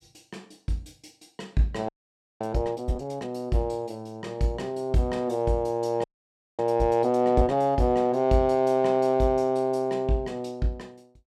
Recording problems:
audio freezing; at 2 s for 0.5 s and at 6 s for 0.5 s

